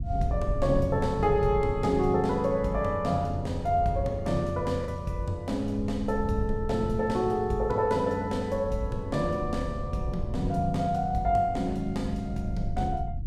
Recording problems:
rumble; below 92 Hz, SNR 10 dB
lost packets; 0.3% of the sound replaced, filled with the last packet

